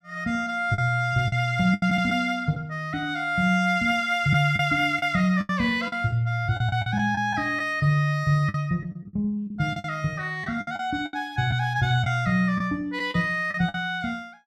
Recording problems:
lost packets; 8% of the sound replaced, filled with the last packet

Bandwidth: 13.5 kHz